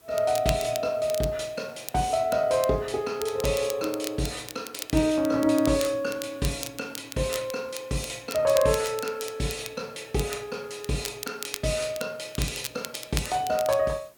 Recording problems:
hiss; slope -4 dB per octave, SNR 28 dB
crackle; vinyl, SNR 11 dB

